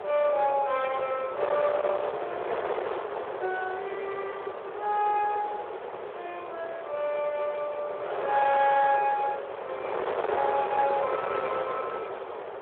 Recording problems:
telephone audio; 340 Hz to 3.7 kHz, Speex
distortion; soft clipping, signal-to-distortion ratio 9 dB
wind noise; below 1 kHz, SNR 6 dB

